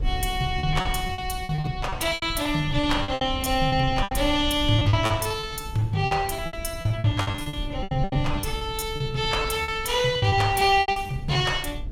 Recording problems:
low-frequency rumble; below 100 Hz, SNR 11 dB
lost packets; 18% of the sound replaced, filled with repeated pitch periods

